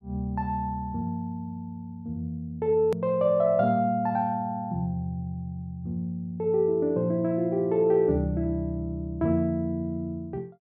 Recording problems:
click at an edit; at 3 s

